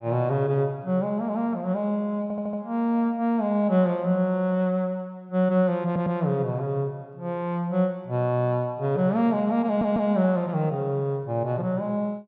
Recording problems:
stutter; at 2 s, at 6 s and at 9.5 s

